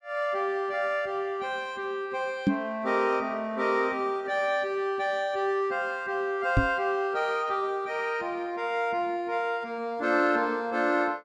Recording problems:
knock on the microphone; at 2.5 s and at 6.5 s; peak +8 dB vs average level

